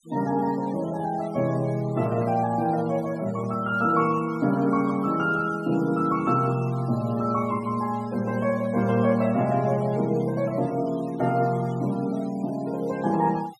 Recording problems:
denoising artefacts; signal-to-artefact ratio 22 dB

